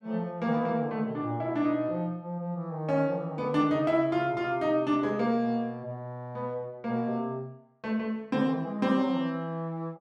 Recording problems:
none

